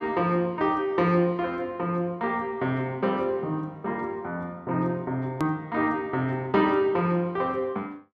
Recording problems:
edit click; at 5.5 s

